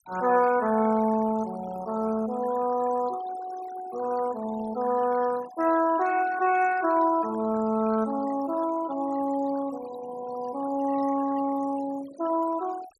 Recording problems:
noise reduction artefacts; signal-to-artefact ratio 17 dB

